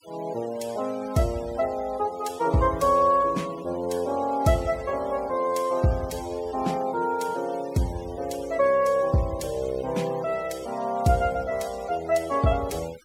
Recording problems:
denoising artefacts; signal-to-artefact ratio 20 dB

